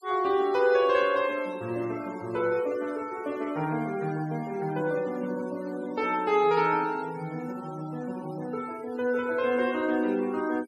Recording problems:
denoising artefacts; signal-to-artefact ratio 21 dB

